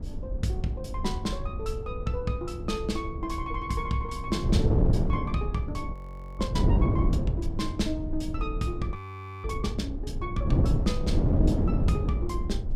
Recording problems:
rumble; below 70 Hz, SNR 5 dB
wind on the microphone; below 200 Hz, SNR -3 dB
audio freezing; at 6 s and at 9 s

